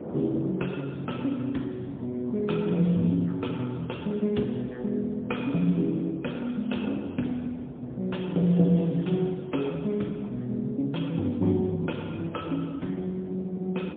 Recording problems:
telephone audio; 130 Hz to 3.8 kHz, AMR-NB, then MP3
wind on the microphone; below 520 Hz, SNR 16 dB

